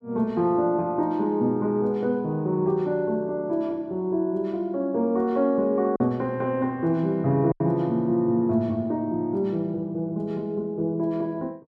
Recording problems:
lost packets; 1% of the sound replaced, filled with silence

